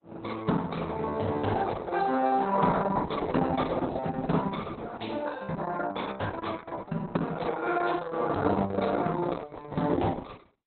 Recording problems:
lossy compression; Opus, log-spectral distance 4 dB, nothing above 4 kHz

